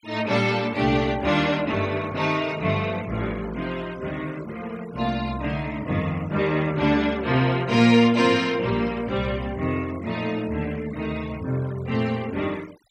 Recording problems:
noise reduction artefacts; signal-to-artefact ratio 22 dB

